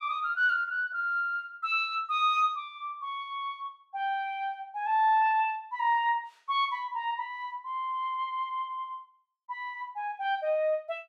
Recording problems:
none

